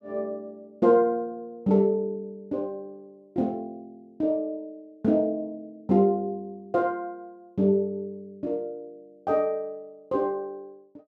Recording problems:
none

